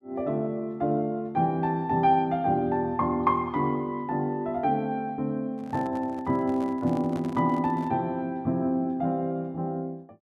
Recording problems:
handling noise; from 5.5 to 8 s; peak -11 dB vs average level

